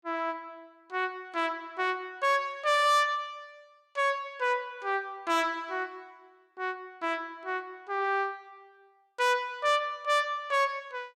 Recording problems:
distortion; soft clipping, signal-to-distortion ratio 12 dB

